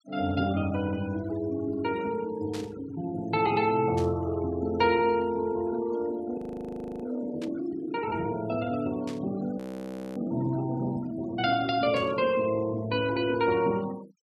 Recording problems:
noise reduction artefacts; signal-to-artefact ratio 19 dB
static burst; 5 times, first at 2.5 s; peak -9 dB vs average level
audio freezing; at 6.5 s for 0.5 s and at 9.5 s for 0.5 s

